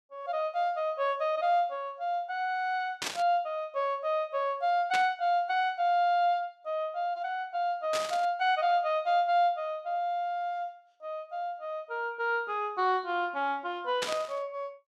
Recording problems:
static burst; 4 times, first at 3 s; peak +1 dB vs average level

